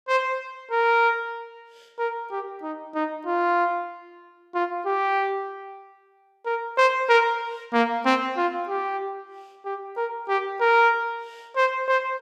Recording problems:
none

